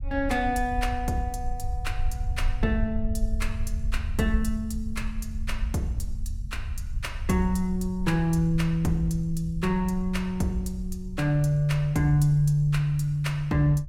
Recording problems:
low-frequency rumble; below 68 Hz, SNR 8 dB

